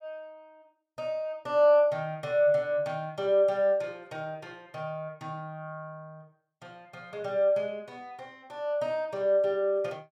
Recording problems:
none

